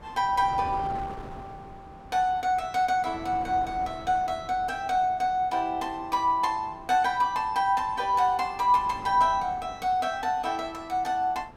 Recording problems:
wind noise; below 830 Hz, SNR 19 dB

